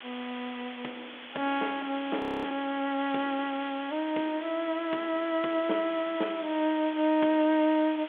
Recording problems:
phone line; 220 Hz to 3.5 kHz, G.726
background hiss; SNR 14 dB
frozen audio; at 2 s

